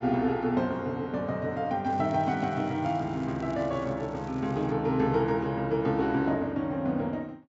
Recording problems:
treble cut off; nothing above 8 kHz
crackle; from 2 to 4.5 s; loose cable, SNR 27 dB

